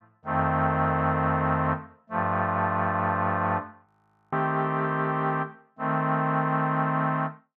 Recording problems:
frozen audio; at 4 s

